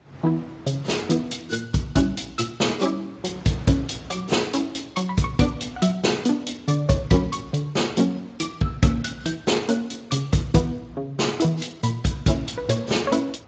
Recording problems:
codec artefacts; AAC, then Speex, log-spectral distance 5 dB, nothing above 7.3 kHz
wind on the microphone; below 1.1 kHz, SNR 23 dB

